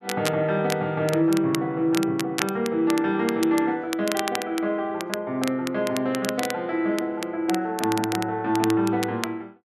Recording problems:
crackle; vinyl, SNR 10 dB

